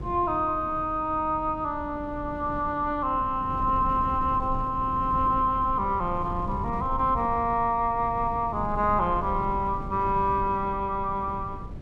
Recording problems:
wind noise; below 170 Hz, SNR 11 dB

